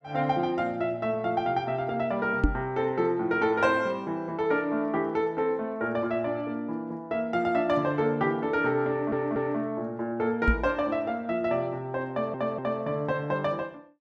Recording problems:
microphone bump; at 2.5 s and at 10 s; peak +8 dB vs average level
audio stuttering; at 9 s and at 12 s

